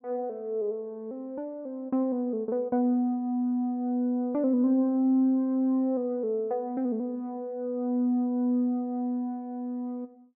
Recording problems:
none

